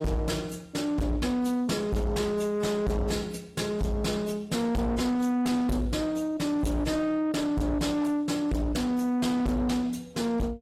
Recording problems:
codec artefacts; AAC, log-spectral distance 2 dB
distorted audio; soft clipping, signal-to-distortion ratio 7 dB

